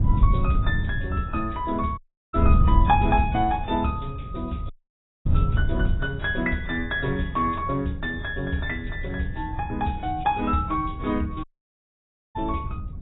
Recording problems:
lossy compression; AAC, log-spectral distance 2 dB, nothing above 3.4 kHz
wind on the microphone; below 100 Hz, SNR 2 dB
dropout; at 2 s, at 4.5 s for 0.5 s and at 11 s for 1 s

